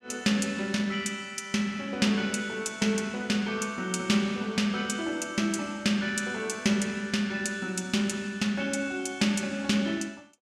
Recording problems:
none

